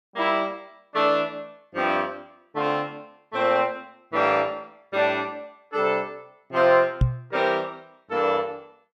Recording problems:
knock on the microphone; at 7 s; peak +7 dB vs average level

